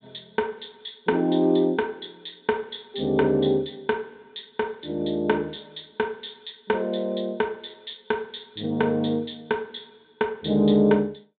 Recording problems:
low-pass filter; nothing above 4 kHz

